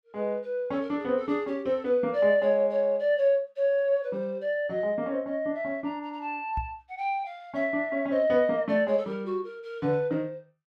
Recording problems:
knock on the microphone; at 6.5 s; peak -3 dB vs average level

